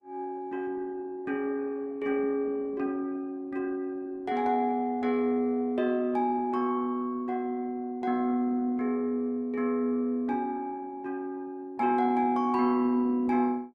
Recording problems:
lossy compression; Opus, log-spectral distance 2 dB, nothing above 13.1 kHz

